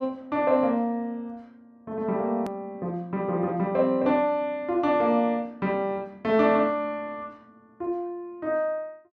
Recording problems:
edit click; at 2.5 s

